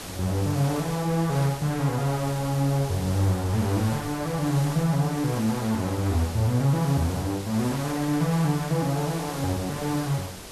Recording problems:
hiss; slope -3 dB per octave, SNR 12 dB
wind on the microphone; below 240 Hz, SNR 23 dB

